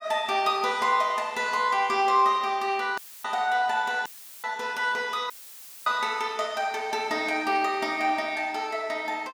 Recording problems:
audio cutting out; at 3 s, at 4 s and at 5.5 s for 0.5 s; filled with static

